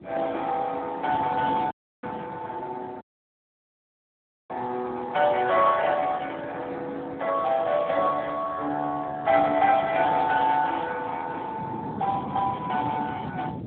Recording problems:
telephone audio; 260 Hz to 3 kHz, Speex
wind on the microphone; below 350 Hz, SNR 15 dB
audio cutting out; at 1.5 s and at 3 s for 1.5 s

